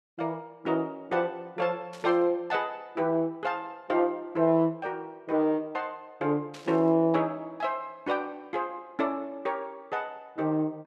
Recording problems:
static burst; at 2 s and at 6.5 s; peak -12 dB vs average level

